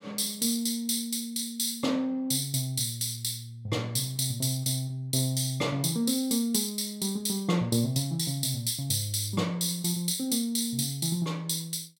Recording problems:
none

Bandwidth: 16.5 kHz